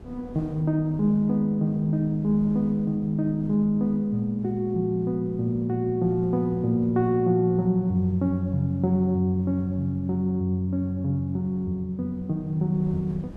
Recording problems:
wind noise; below 280 Hz, SNR 22 dB

